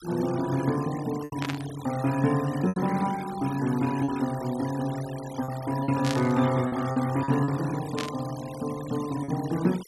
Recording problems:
noise reduction artefacts; signal-to-artefact ratio 15 dB
packet loss; 5% of the sound replaced, filled with repeated pitch periods
static burst; at 1.5 s, at 6 s and at 8 s; peak -1 dB vs average level

